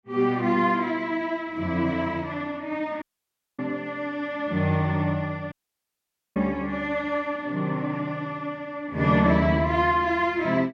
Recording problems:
audio cutting out; at 3 s for 0.5 s and at 5.5 s for 1 s

